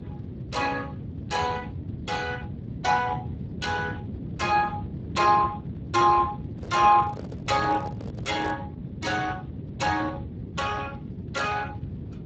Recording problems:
lossy codec; Speex, log-spectral distance 3 dB, nothing above 7.3 kHz
rumble; below 240 Hz, SNR 9 dB
microphone handling noise; from 6.5 to 8.5 s; peak -6 dB vs average level

